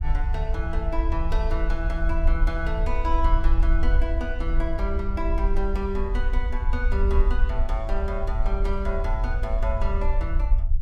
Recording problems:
low-frequency rumble; below 54 Hz, SNR -4 dB

